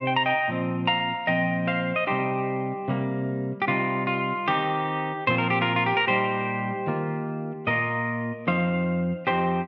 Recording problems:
none

